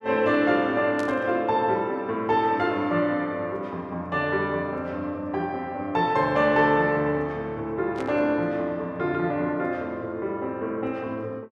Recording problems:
burst of static; at 1 s and at 8 s; peak -12 dB vs average level

